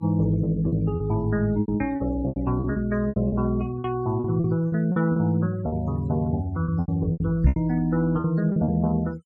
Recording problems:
noise reduction artefacts; signal-to-artefact ratio 24 dB
packet loss; 13% of the sound replaced, filled with repeated pitch periods
microphone bump; at 7.5 s; peak +8 dB vs average level

